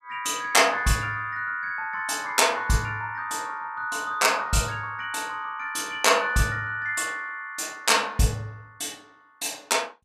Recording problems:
none

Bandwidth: 14.5 kHz